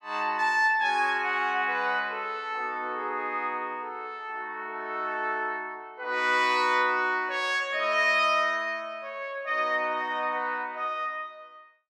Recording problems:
none

